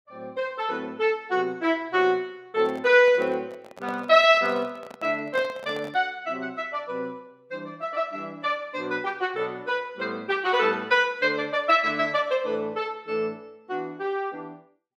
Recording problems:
microphone handling noise; from 2.5 to 6 s; peak -7 dB vs average level

